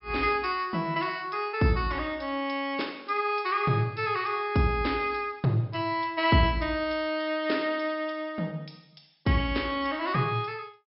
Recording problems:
treble cut off; nothing above 5.3 kHz

